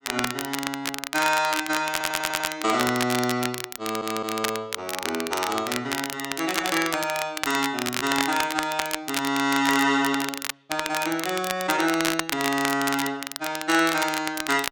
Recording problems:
crackle; vinyl, SNR 4 dB
stutter; at 2 s and at 4 s

